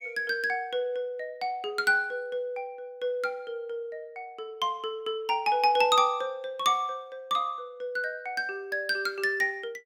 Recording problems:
none

